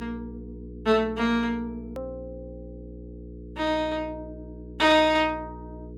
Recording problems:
electrical hum; 60 Hz, harmonics up to 480 Hz, SNR 16 dB
hard cut with a click; at 2 s

